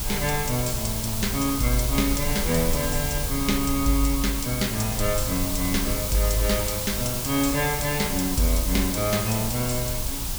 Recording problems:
hiss; SNR 2 dB
low-frequency rumble; below 66 Hz, SNR 9 dB

